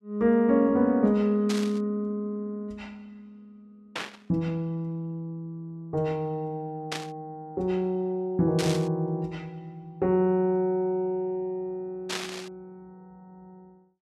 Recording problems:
static burst; 5 times, first at 1.5 s; peak -1 dB vs average level

